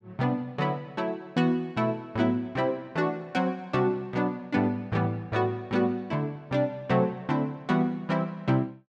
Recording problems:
none

